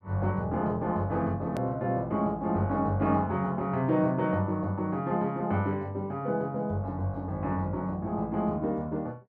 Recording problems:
click at an edit; at 1.5 s

